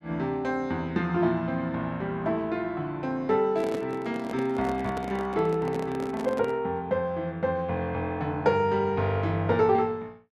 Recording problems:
microphone handling noise; from 3.5 to 6.5 s; peak -4 dB vs average level

